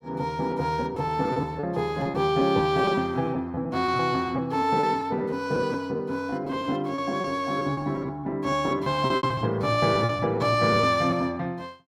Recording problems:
packet loss; 12% of the sound replaced, filled with repeated pitch periods

